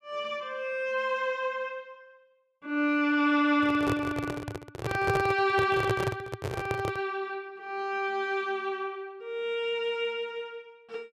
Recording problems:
microphone handling noise; from 3.5 to 7 s; peak +4 dB vs average level

